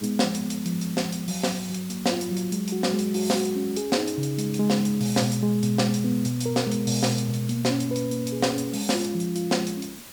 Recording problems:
hiss; slope -1 dB per octave, SNR 16 dB

